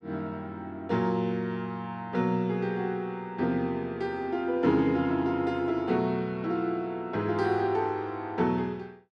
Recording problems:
none

